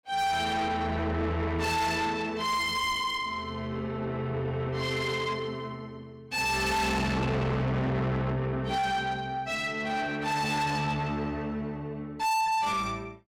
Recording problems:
distortion; soft clipping, signal-to-distortion ratio 6 dB

